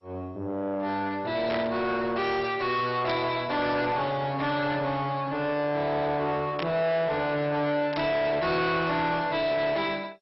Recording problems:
lossy codec; MP2, log-spectral distance 3 dB, nothing above 5.5 kHz
distortion; soft clipping, signal-to-distortion ratio 7 dB
static burst; 4 times, first at 1.5 s; peak -3 dB vs average level

